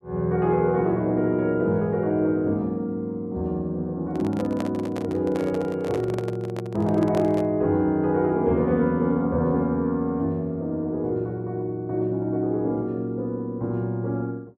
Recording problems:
handling noise; from 4 to 7.5 s; peak -4 dB vs average level

